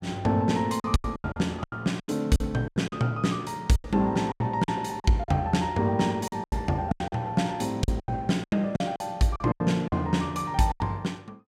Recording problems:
packet loss; 14% of the sound replaced, filled with silence

